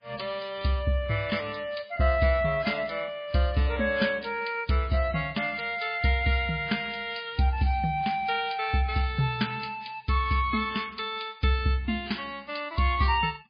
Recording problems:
lossy codec; MP3, log-spectral distance 4 dB, nothing above 4.5 kHz

